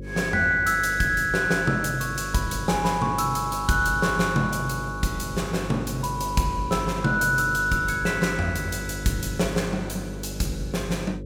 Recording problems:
hum; 50 Hz, harmonics up to 550 Hz, SNR 11 dB

